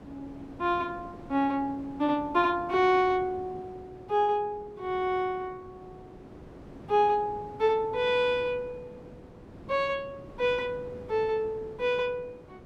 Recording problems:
wind noise; below 490 Hz, SNR 19 dB

